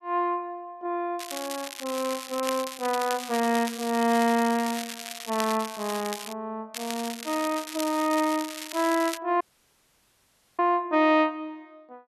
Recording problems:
crackle; from 1 to 6.5 s and from 6.5 to 9 s; loose cable, SNR 9 dB
dropout; at 9.5 s for 1 s

